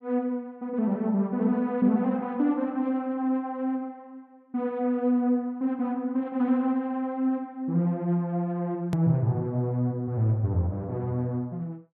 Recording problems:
edit click; at 9 s

